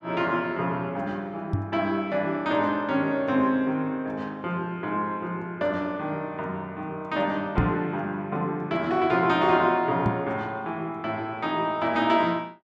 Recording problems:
microphone bump; at 1.5 s, at 7.5 s and at 10 s; peak +5 dB vs average level

